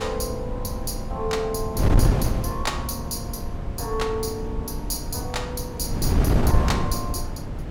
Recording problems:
wind noise; below 180 Hz, SNR -3 dB

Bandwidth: 18.5 kHz